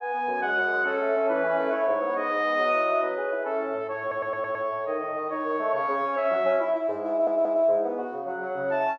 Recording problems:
stutter; at 4 s and at 7 s

